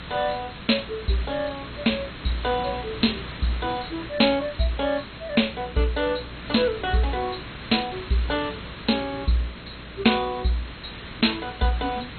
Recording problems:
lossy codec; MP2, log-spectral distance 15 dB, nothing above 4.2 kHz
mains hum; 60 Hz, harmonics up to 660 Hz, SNR 18 dB
background hiss; SNR 12 dB

